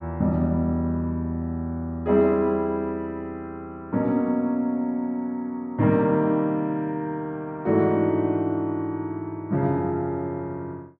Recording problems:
none

